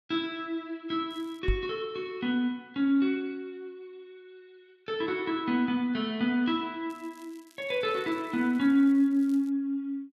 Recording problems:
crackling; at 1 s and from 7 to 9.5 s; loose cable, SNR 30 dB
microphone bump; at 1.5 s; peak +3 dB vs average level

